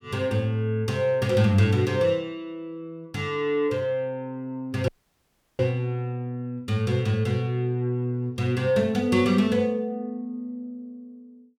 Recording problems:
dropout; at 5 s for 0.5 s

